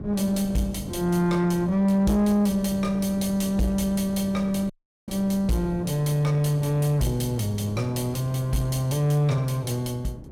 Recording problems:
distortion; soft clipping, signal-to-distortion ratio 11 dB
wind on the microphone; below 320 Hz, SNR 15 dB
audio cutting out; at 4.5 s

